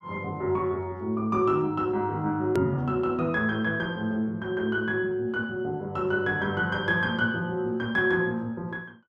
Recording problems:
hard cut with a click; at 2.5 s

